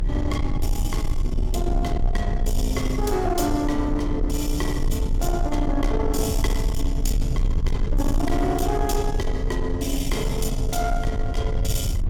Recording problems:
distortion; soft clipping, signal-to-distortion ratio 11 dB
electrical hum; 50 Hz, harmonics up to 350 Hz, SNR 16 dB
low-frequency rumble; below 70 Hz, strongest tone 28 Hz, SNR 1 dB

